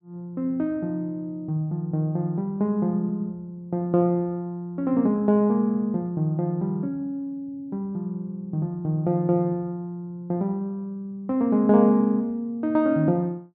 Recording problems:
none

